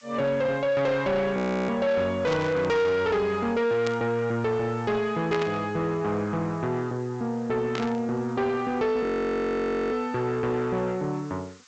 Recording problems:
treble cut off; nothing above 8 kHz
distorted audio; soft clipping, signal-to-distortion ratio 10 dB
hiss; SNR 28 dB
audio freezing; at 1.5 s and at 9 s for 1 s
static burst; 4 times, first at 2.5 s; peak -4 dB vs average level

